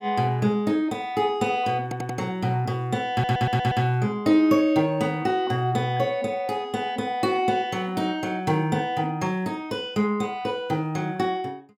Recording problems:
stutter; at 2 s and at 3 s

